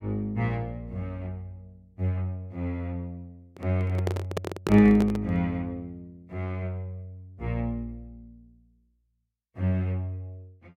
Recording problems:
handling noise; from 3.5 to 5.5 s; peak +3 dB vs average level

